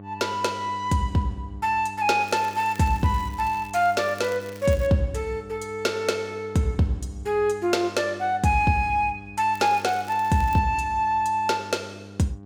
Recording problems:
hum; 50 Hz, harmonics up to 1.1 kHz, SNR 18 dB
crackle; from 2 to 5 s and from 9.5 to 11 s; loose cable, SNR 23 dB

